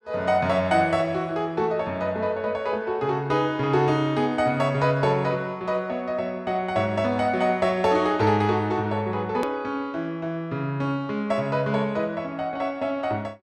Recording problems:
click at an edit; at 9.5 s

